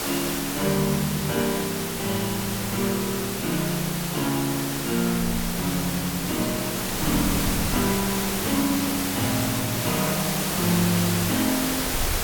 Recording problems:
hiss; slope -3 dB per octave, SNR 1 dB
wind on the microphone; below 100 Hz, SNR 15 dB

